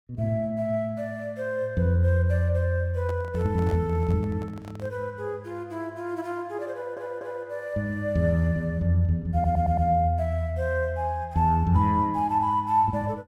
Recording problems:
microphone handling noise; from 3 to 5 s; peak -10 dB vs average level
stutter; at 6.5 s and at 9.5 s

